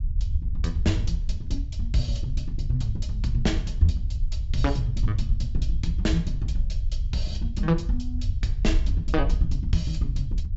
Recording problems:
treble missing; nothing above 8 kHz
low-frequency rumble; below 68 Hz, SNR 1 dB

